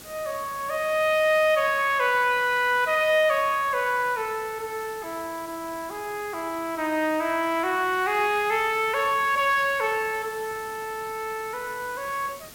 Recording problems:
background hiss; slope -2 dB per octave, SNR 18 dB

